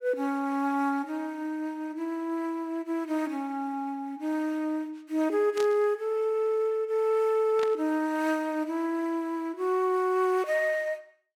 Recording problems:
static burst; at 5.5 s and at 7.5 s; peak -6 dB vs average level

